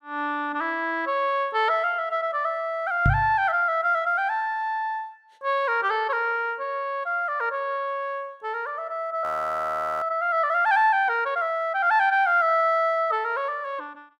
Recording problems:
microphone thump; at 3 s; peak +5 dB vs average level
frozen audio; at 9 s for 1 s

